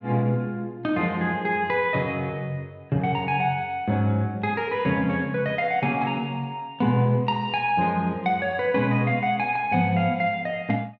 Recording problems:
none

